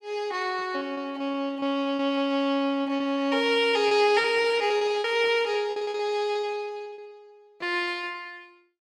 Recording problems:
packet loss; 16% of the sound replaced, filled with repeated pitch periods

